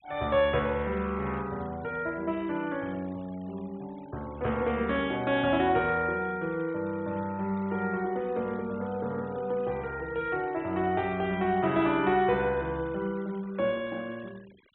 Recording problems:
low-pass filter; nothing above 3.8 kHz
denoising artefacts; signal-to-artefact ratio 23 dB

